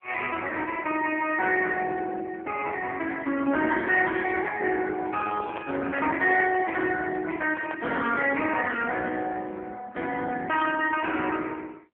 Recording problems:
telephone audio; 240 Hz to 3.3 kHz, AMR-NB
handling noise; from 5 to 8 s; peak -5 dB vs average level

